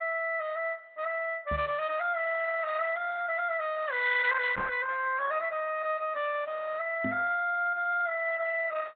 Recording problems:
treble missing; nothing above 4 kHz
lossy compression; Opus, log-spectral distance 3 dB
microphone thump; at 1.5 s, at 4.5 s and at 7 s; peak -1 dB vs average level

